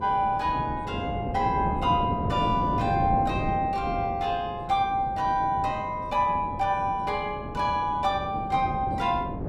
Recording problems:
wind noise; below 380 Hz, SNR 7 dB

